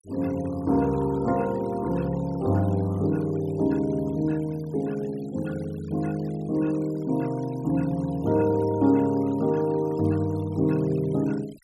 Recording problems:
denoising artefacts; signal-to-artefact ratio 23 dB

